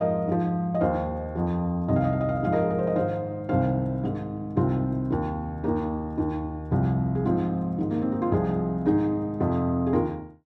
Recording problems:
none

